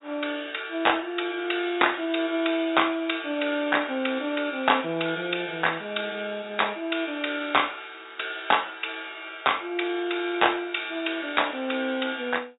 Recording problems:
low-pass filter; nothing above 4 kHz

